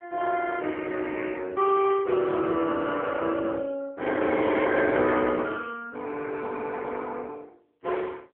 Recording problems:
phone line; 260 Hz to 3.4 kHz, AMR-NB

